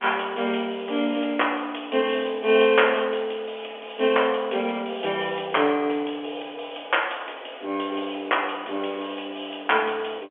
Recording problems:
phone line; 300 Hz to 3.4 kHz, G.711

